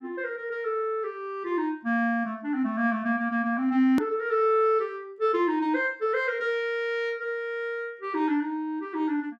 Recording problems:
edit click; at 4 s

